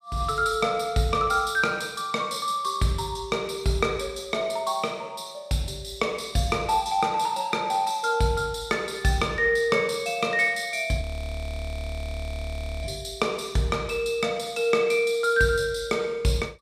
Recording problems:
audio freezing; at 11 s for 2 s

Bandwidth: 14.5 kHz